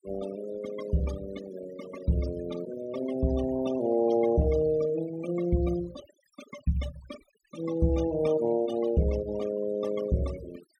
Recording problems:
noise reduction artefacts; signal-to-artefact ratio 16 dB

